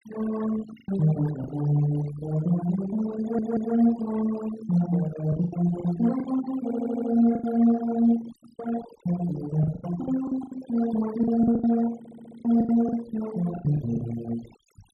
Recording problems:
denoising artefacts; signal-to-artefact ratio 14 dB
packet loss; 9% of the sound replaced, filled with the last packet
audio stuttering; at 3 s, at 6.5 s and at 12 s

